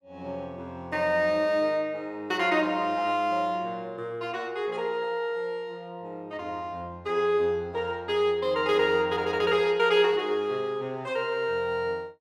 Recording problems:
none

